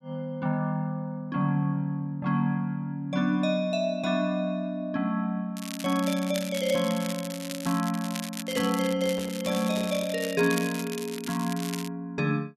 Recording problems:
crackling; from 5.5 to 9 s and from 9 to 12 s; loose cable, SNR 10 dB
microphone handling noise; from 8.5 to 10 s; peak -9 dB vs average level

